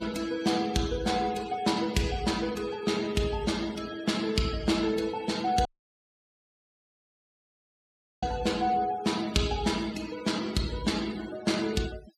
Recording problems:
denoising artefacts; signal-to-artefact ratio 16 dB
dropout; at 5.5 s for 2.5 s

